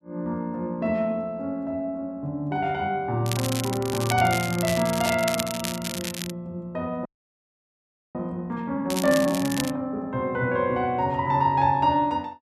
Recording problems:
crackling; from 3 to 6.5 s and at 9 s; loose cable, SNR 7 dB
frozen audio; at 7 s for 1 s

